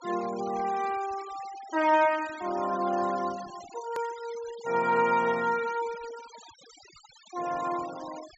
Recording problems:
treble missing; nothing above 7.6 kHz
denoising artefacts; signal-to-artefact ratio 17 dB
edit click; at 4 s

